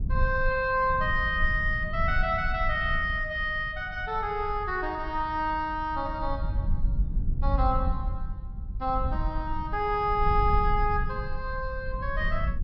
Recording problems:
low-pass filter; nothing above 5.5 kHz
low-frequency rumble; below 68 Hz, SNR 5 dB

